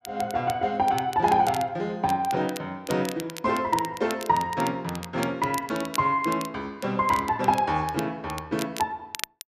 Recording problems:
crackle; vinyl, SNR 14 dB

